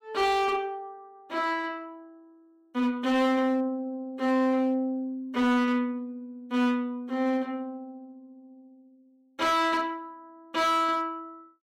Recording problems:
distorted audio; hard clipping, uneven, signal-to-distortion ratio 11 dB

